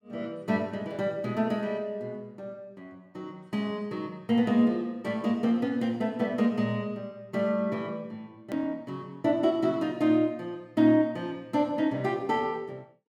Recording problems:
edit click; at 8.5 s

